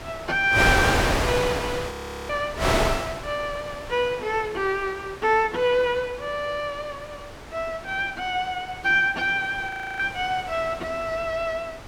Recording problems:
wind on the microphone; below 2.1 kHz, SNR 3 dB
audio freezing; at 2 s and at 9.5 s

